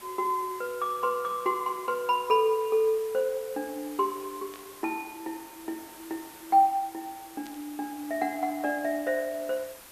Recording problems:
hiss; slope -2 dB per octave, SNR 18 dB
burst of static; at 4.5 s and at 7.5 s; peak -15 dB vs average level

